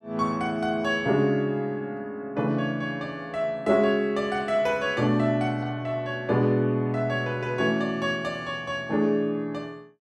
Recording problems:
none

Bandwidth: 13 kHz